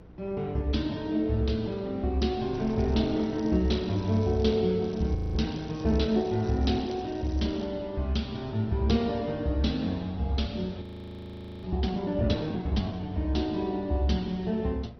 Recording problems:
codec artefacts; Opus, then MP2, log-spectral distance 3 dB, nothing above 5.8 kHz
electrical hum; 60 Hz, harmonics up to 480 Hz, SNR 24 dB
wind noise; below 330 Hz, SNR 23 dB
crackling; from 2.5 to 4.5 s and from 5 to 7.5 s; loose cable, SNR 27 dB
frozen audio; at 5 s and at 11 s for 1 s

